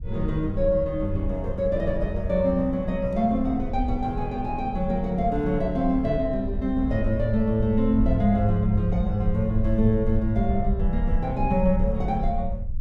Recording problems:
low-frequency rumble; below 66 Hz, SNR 7 dB

